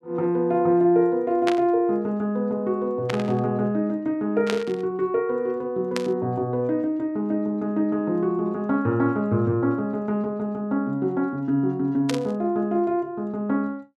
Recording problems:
burst of static; 5 times, first at 1.5 s; peak 0 dB vs average level

